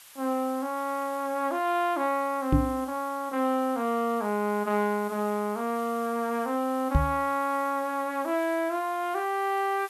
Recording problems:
background hiss; SNR 20 dB
microphone thump; at 2.5 s and at 7 s; peak +9 dB vs average level

